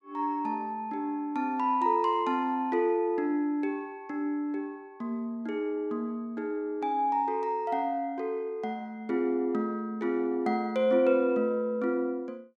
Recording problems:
none

